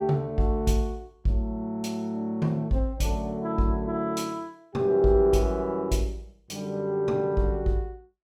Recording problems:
none

